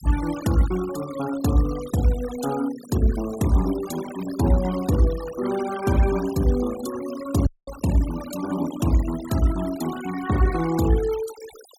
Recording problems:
noise reduction artefacts; signal-to-artefact ratio 15 dB
audio cutting out; at 7.5 s

